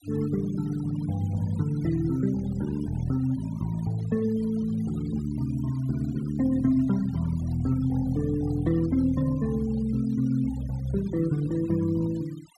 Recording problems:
denoising artefacts; signal-to-artefact ratio 22 dB

